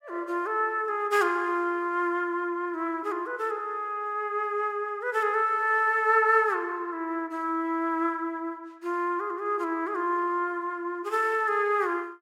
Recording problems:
none

